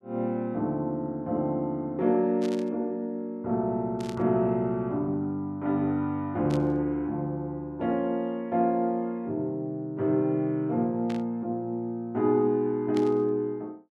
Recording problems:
static burst; 5 times, first at 2.5 s; peak -9 dB vs average level

